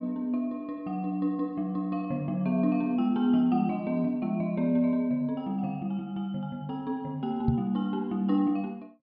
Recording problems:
treble cut off; nothing above 5.5 kHz
microphone bump; at 7.5 s; peak +6 dB vs average level

